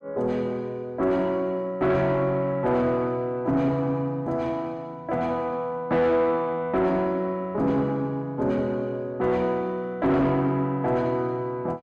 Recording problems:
distortion; soft clipping, signal-to-distortion ratio 11 dB

